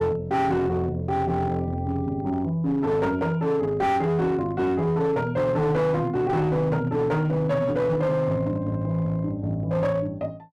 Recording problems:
distorted audio; hard clipping, signal-to-distortion ratio 12 dB

